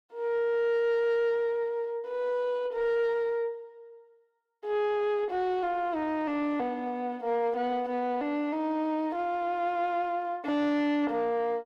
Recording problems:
distorted audio; soft clipping, signal-to-distortion ratio 10 dB

